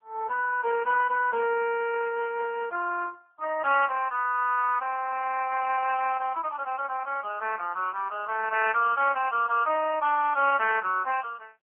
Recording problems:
telephone audio; 300 Hz to 2.7 kHz, AMR-NB

